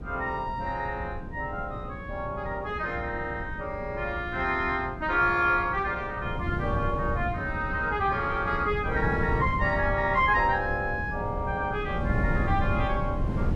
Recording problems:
electrical hum; 60 Hz, harmonics up to 480 Hz, SNR 18 dB
wind noise; below 190 Hz, SNR 6 dB

